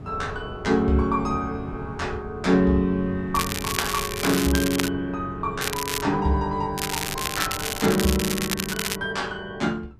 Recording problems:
wind noise; below 170 Hz, SNR 15 dB
crackle; from 3.5 to 5 s, at 5.5 s and from 7 to 9 s; loose cable, SNR 3 dB

